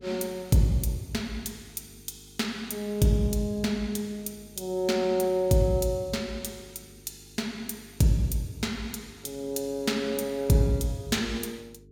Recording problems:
electrical hum; 50 Hz, harmonics up to 450 Hz, SNR 25 dB

